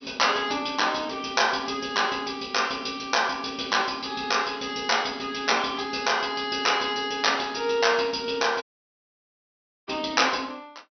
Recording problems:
treble missing; nothing above 6 kHz
audio cutting out; at 8.5 s for 1.5 s

